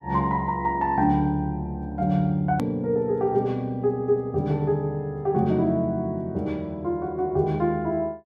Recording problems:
click at an edit; at 2.5 s

